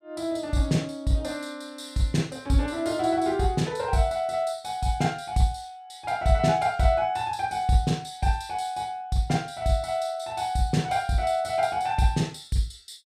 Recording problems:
none

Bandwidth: 15 kHz